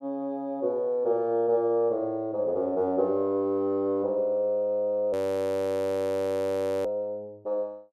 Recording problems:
frozen audio; at 5 s for 1.5 s

